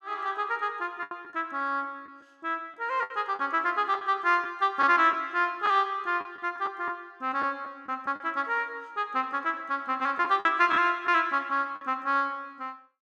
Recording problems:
lost packets; 5% of the sound replaced, filled with the last packet

